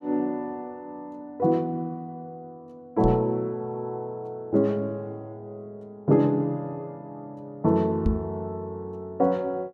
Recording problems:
microphone thump; at 3 s and at 8 s; peak +5 dB vs average level

